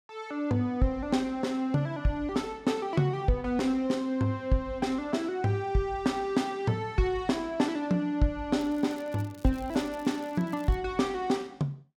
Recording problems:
crackle; from 8.5 to 11 s; loose cable, SNR 26 dB

